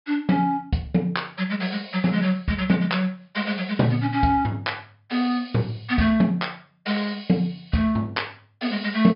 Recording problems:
treble missing; nothing above 5.5 kHz

